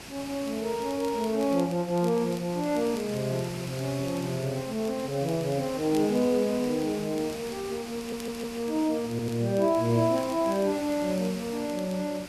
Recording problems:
background hiss; slope -2 dB per octave, SNR 12 dB
crackling; vinyl, SNR 24 dB
stutter; at 8 s and at 9 s

